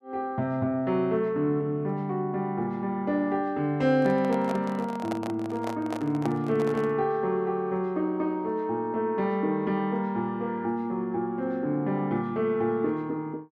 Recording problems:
handling noise; from 4 to 7 s; peak -2 dB vs average level

